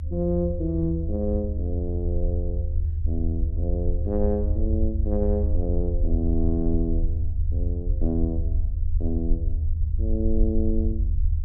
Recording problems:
rumble; below 78 Hz, SNR -2 dB

